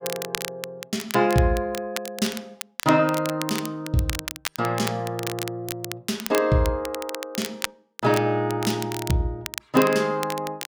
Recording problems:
crackle; vinyl, SNR 9 dB

